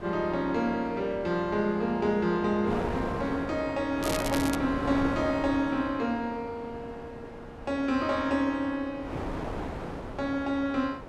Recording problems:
wind noise; below 840 Hz, SNR 9 dB
crackling; at 4 s; loose cable, SNR 8 dB

